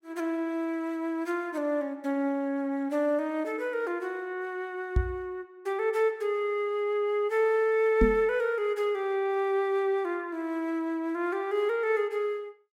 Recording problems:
knock on the microphone; at 5 s and at 8 s; peak +7 dB vs average level

